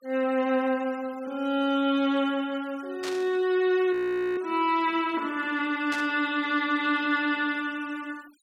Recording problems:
noise reduction artefacts; signal-to-artefact ratio 24 dB
burst of static; at 3 s and at 6 s; peak -6 dB vs average level
audio freezing; at 4 s

